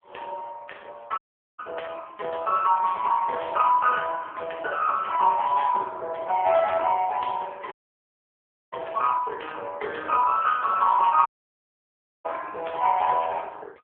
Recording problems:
telephone audio; 370 Hz to 3.3 kHz, AMR-NB
dropout; at 1 s, at 7.5 s for 1 s and at 11 s for 1 s

